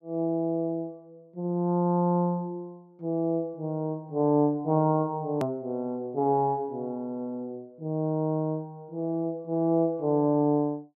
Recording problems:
click at an edit; at 5.5 s

